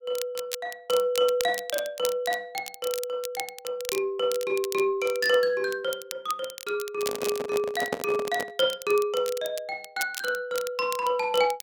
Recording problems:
crackling; vinyl, SNR 11 dB
handling noise; from 7 to 8.5 s; peak +3 dB vs average level

